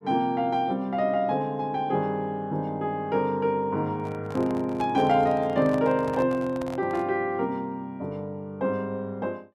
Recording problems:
handling noise; from 4 to 7 s; peak -8 dB vs average level

